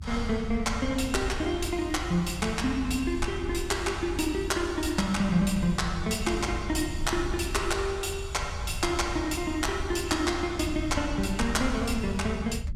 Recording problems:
low-frequency rumble; below 82 Hz, SNR 8 dB

